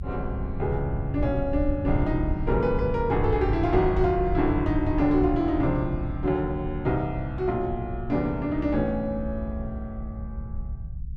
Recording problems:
rumble; below 92 Hz, SNR 7 dB

